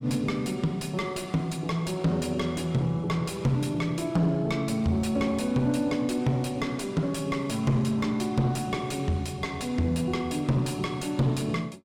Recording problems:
distortion; soft clipping, signal-to-distortion ratio 10 dB

